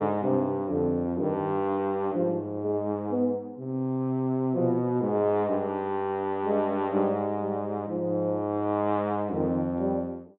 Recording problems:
treble missing; nothing above 4 kHz

